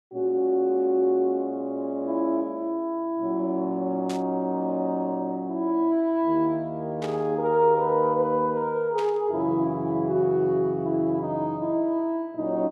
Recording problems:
static burst; at 4 s, at 7 s and at 9 s; peak -9 dB vs average level

